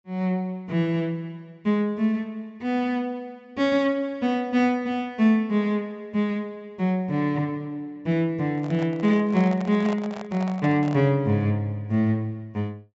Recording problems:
low-pass filter; nothing above 7.6 kHz
microphone handling noise; from 8.5 to 11 s; peak -7 dB vs average level

